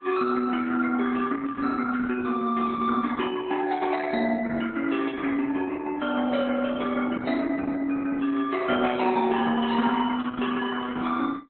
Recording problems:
codec artefacts; Opus, then AAC, log-spectral distance 5 dB, nothing above 3.9 kHz

